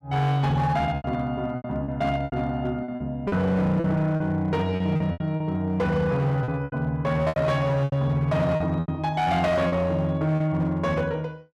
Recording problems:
distorted audio; hard clipping, signal-to-distortion ratio 12 dB
packet loss; 10% of the sound replaced, filled with repeated pitch periods

